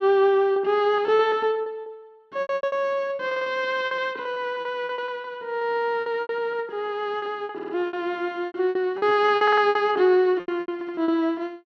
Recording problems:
packet loss; 16% of the sound replaced, filled with repeated pitch periods
audio stuttering; 4 times, first at 3.5 s

